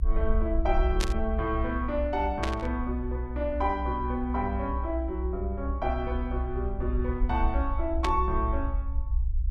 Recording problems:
rumble; below 64 Hz, SNR 1 dB
static burst; at 1 s, at 2.5 s and at 8 s; peak +3 dB vs average level

